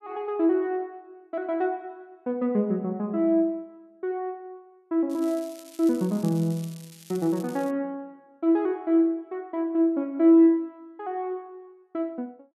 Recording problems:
crackling; from 5 to 7.5 s; loose cable, SNR 22 dB

